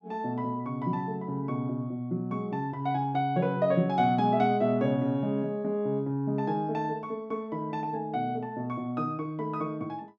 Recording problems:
none

